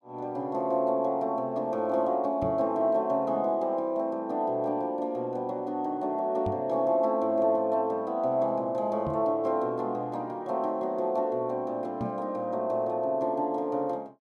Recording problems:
microphone bump; 4 times, first at 2.5 s; peak -3 dB vs average level

